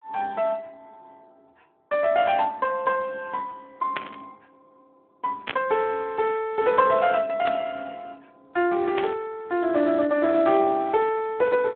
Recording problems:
phone line; 110 Hz to 3.1 kHz, Speex
burst of static; 4 times, first at 4 s; peak -1 dB vs average level

